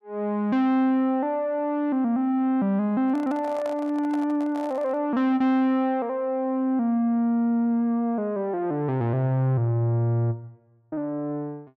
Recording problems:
handling noise; from 3 to 5 s; peak -9 dB vs average level

